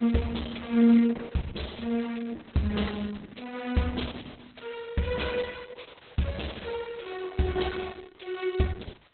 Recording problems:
lossy codec; Opus, log-spectral distance 10 dB, nothing above 4 kHz
hiss; SNR 27 dB

